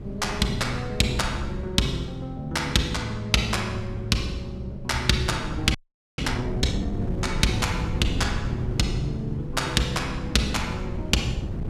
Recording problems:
wind noise; below 180 Hz, SNR 8 dB
frozen audio; at 6 s

